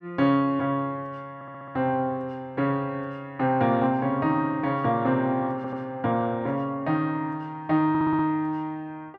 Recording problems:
stutter; at 1.5 s, at 5.5 s and at 8 s

